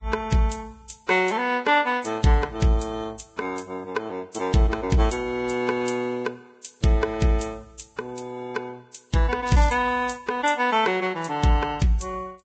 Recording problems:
treble cut off; nothing above 8 kHz
codec artefacts; Vorbis, log-spectral distance 4 dB
crackle; at 9.5 s; loose cable, SNR 19 dB

